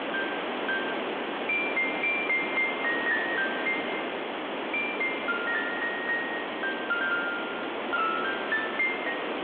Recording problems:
telephone audio; 190 Hz to 3.5 kHz, G.726
distorted audio; soft clipping, signal-to-distortion ratio 11 dB
hiss; SNR 4 dB

